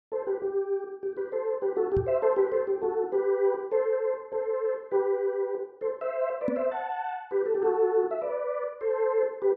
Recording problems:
knock on the microphone; at 2 s and at 6.5 s; peak +2 dB vs average level

